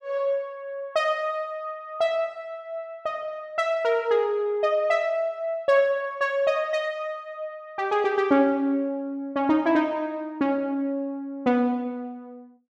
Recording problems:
none

